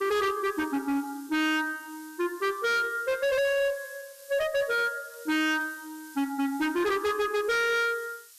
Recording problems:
distorted audio; hard clipping, uneven, signal-to-distortion ratio 7 dB
background hiss; slope +6 dB per octave, SNR 21 dB

